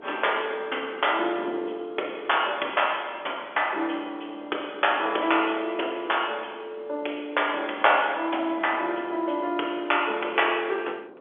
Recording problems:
phone line; 300 Hz to 3.4 kHz, G.711
wind noise; below 650 Hz, SNR 20 dB

